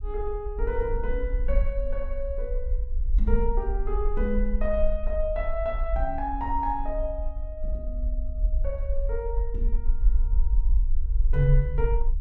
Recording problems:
low-frequency rumble; below 46 Hz, SNR -1 dB

